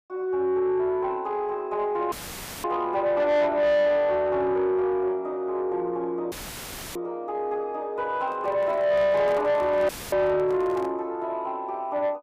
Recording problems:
distorted audio; soft clipping, signal-to-distortion ratio 12 dB
dropout; at 2 s for 0.5 s, at 6.5 s for 0.5 s and at 10 s; filled with static
microphone handling noise; from 8 to 11 s; peak -8 dB vs average level

